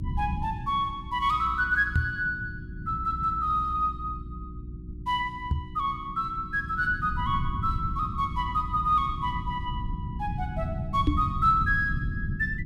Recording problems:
hum; 60 Hz, harmonics up to 360 Hz, SNR 17 dB
rumble; below 150 Hz, SNR 8 dB
microphone bump; at 2 s, at 5.5 s and at 11 s; peak +6 dB vs average level

